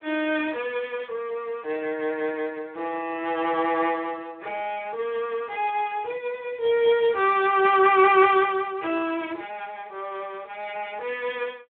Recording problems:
phone line; 260 Hz to 3.5 kHz, Speex

